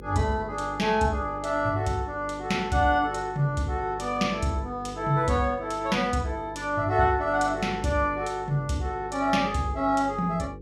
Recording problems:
mains hum; 50 Hz, harmonics up to 500 Hz, SNR 16 dB

